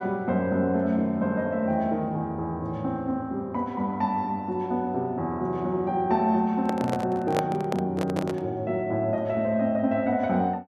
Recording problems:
handling noise; from 6.5 to 8.5 s; peak +2 dB vs average level

